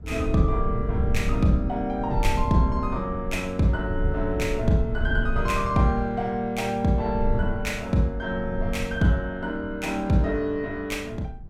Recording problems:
wind on the microphone; below 88 Hz, SNR 5 dB

